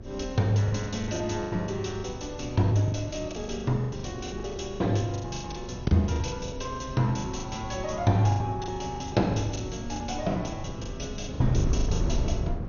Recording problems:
codec artefacts; MP2, log-spectral distance 4 dB, nothing above 6.7 kHz
hum; 50 Hz, harmonics up to 600 Hz, SNR 23 dB
wind on the microphone; below 150 Hz, SNR 8 dB
lost packets; 17% of the sound replaced, filled with the last packet

